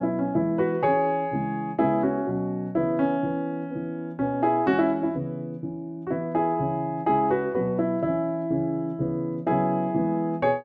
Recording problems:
none

